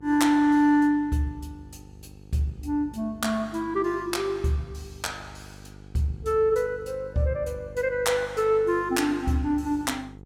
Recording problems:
electrical hum; 50 Hz, harmonics up to 900 Hz, SNR 21 dB

